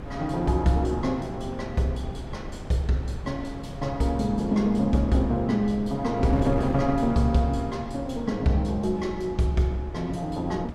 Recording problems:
hum; 60 Hz, harmonics up to 660 Hz, SNR 27 dB
wind noise; below 280 Hz, SNR 12 dB

